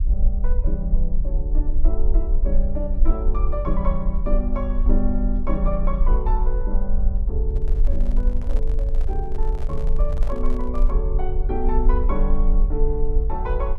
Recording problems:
low-frequency rumble; below 42 Hz, strongest tone 22 Hz, SNR -6 dB
handling noise; from 7.5 to 11 s; peak -6 dB vs average level

